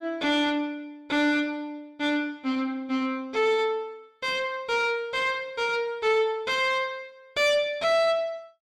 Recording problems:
distorted audio; soft clipping, signal-to-distortion ratio 10 dB

